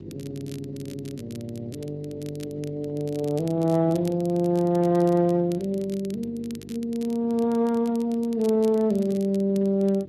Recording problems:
lossy compression; Speex, log-spectral distance 2 dB
mains hum; 50 Hz, harmonics up to 550 Hz, SNR 17 dB
crackling; vinyl, SNR 24 dB

